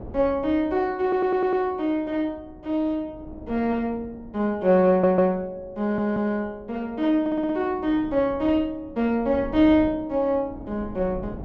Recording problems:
low-pass filter; nothing above 8 kHz
wind on the microphone; below 340 Hz, SNR 20 dB
stutter; 4 times, first at 1 s

